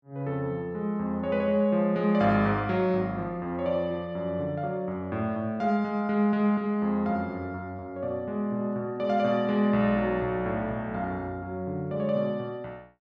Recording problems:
none

